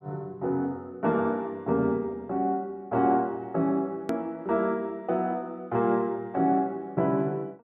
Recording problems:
hard cut with a click; at 4 s

